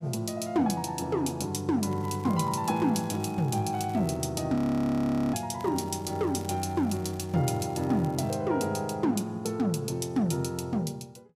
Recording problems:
crackle; from 2 to 4.5 s and from 5.5 to 8.5 s; loose cable, SNR 25 dB
frozen audio; at 4.5 s for 1 s

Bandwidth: 14.5 kHz